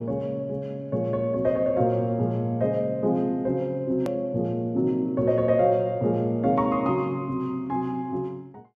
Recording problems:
click at an edit; at 4 s

